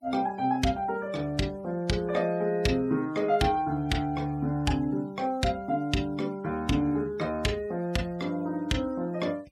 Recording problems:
denoising artefacts; signal-to-artefact ratio 25 dB

